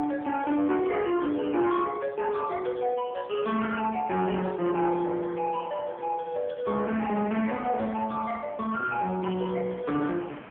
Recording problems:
telephone audio; 190 Hz to 2.9 kHz, AMR-NB
distorted audio; soft clipping, signal-to-distortion ratio 13 dB
wind on the microphone; below 1.6 kHz, SNR 23 dB

